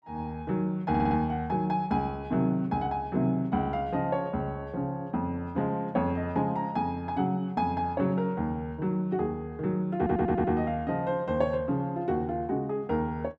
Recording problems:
audio stuttering; at 1 s and at 10 s

